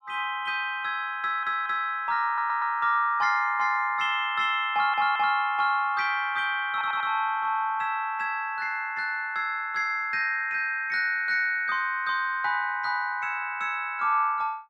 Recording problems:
stutter; 4 times, first at 1 s

